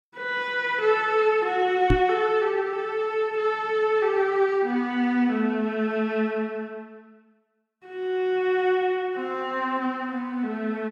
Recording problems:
knock on the microphone; at 2 s; peak +6 dB vs average level

